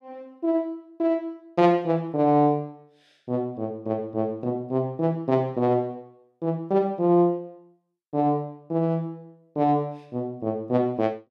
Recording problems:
none

